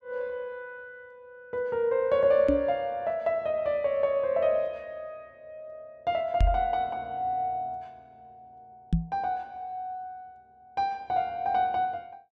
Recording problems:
knock on the microphone; at 2.5 s, at 6.5 s and at 9 s; peak +7 dB vs average level

